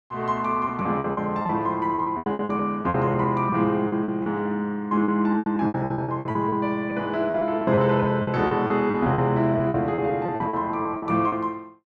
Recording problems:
packet loss; 16% of the sound replaced, filled with repeated pitch periods

